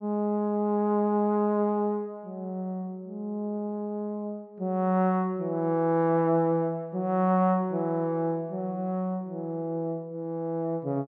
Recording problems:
none

